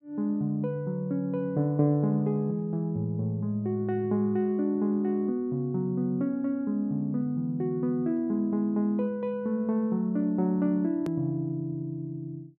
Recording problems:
click at an edit; at 11 s

